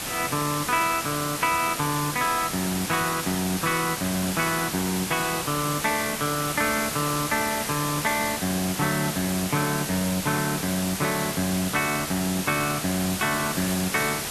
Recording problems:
hiss; slope -1 dB per octave, SNR 3 dB

